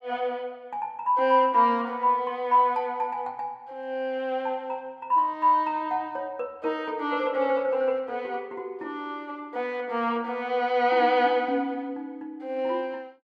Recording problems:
none

